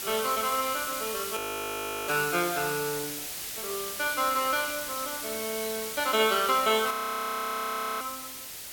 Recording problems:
hiss; SNR 5 dB
frozen audio; at 1.5 s for 0.5 s and at 7 s for 1 s

